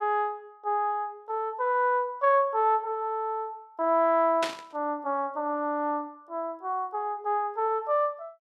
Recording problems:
burst of static; at 4.5 s; peak +1 dB vs average level

